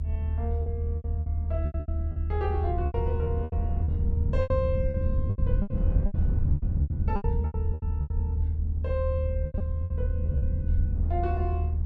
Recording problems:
low-frequency rumble; below 82 Hz, strongest tone 78 Hz, SNR -7 dB
wind on the microphone; below 440 Hz, SNR 15 dB
packet loss; 14% of the sound replaced, filled with repeated pitch periods

